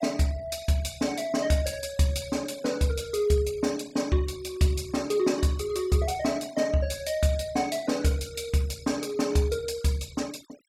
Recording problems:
noise reduction artefacts; signal-to-artefact ratio 21 dB

